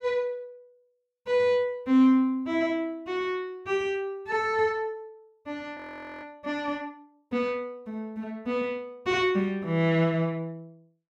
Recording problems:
audio freezing; at 6 s

